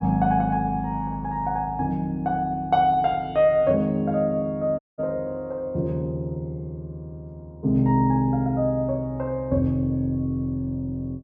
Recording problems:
audio cutting out; at 5 s

